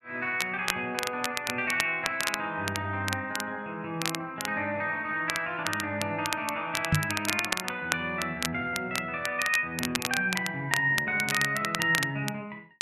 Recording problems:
crackling; vinyl, SNR 5 dB
knock on the microphone; at 7 s; peak +8 dB vs average level

